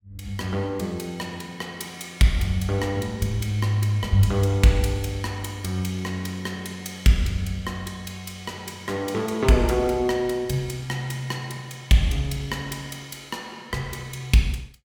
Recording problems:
none

